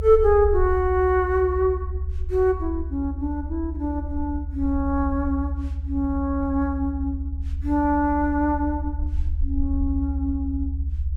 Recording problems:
low-frequency rumble; below 74 Hz, strongest tone 72 Hz, SNR 5 dB

